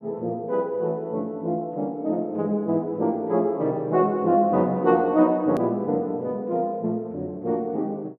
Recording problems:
click at an edit; at 5.5 s

